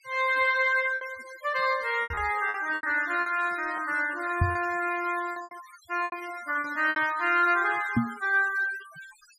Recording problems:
noise reduction artefacts; signal-to-artefact ratio 19 dB
packet loss; 8% of the sound replaced, filled with repeated pitch periods
knock on the microphone; at 2 s, at 4.5 s and at 8 s; peak +6 dB vs average level

